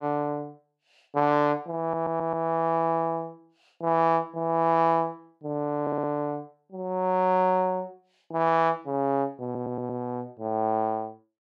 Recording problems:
audio stuttering; at 2 s, at 6 s and at 9.5 s

